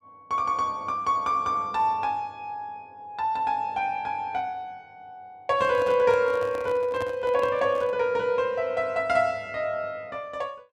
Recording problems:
microphone handling noise; from 5.5 to 8 s; peak -6 dB vs average level

